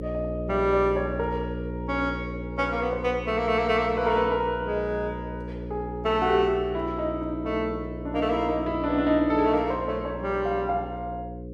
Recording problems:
electrical hum; 60 Hz, harmonics up to 540 Hz, SNR 9 dB

